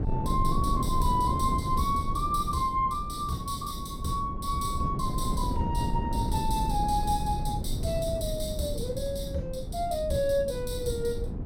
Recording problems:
wind on the microphone; below 180 Hz, SNR 3 dB

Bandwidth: 16.5 kHz